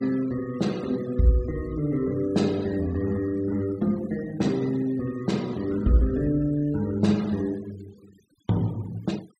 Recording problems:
denoising artefacts; signal-to-artefact ratio 23 dB

